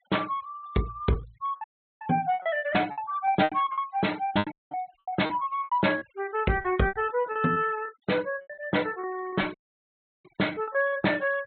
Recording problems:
low-pass filter; nothing above 4 kHz
noise reduction artefacts; signal-to-artefact ratio 22 dB
packet loss; 16% of the sound replaced, filled with repeated pitch periods
dropout; at 1.5 s, at 4.5 s and at 9.5 s for 0.5 s

